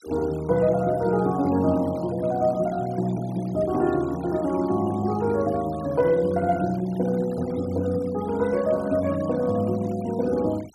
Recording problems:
denoising artefacts; signal-to-artefact ratio 22 dB

